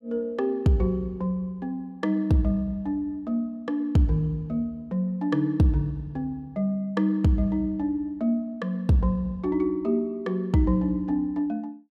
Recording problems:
none

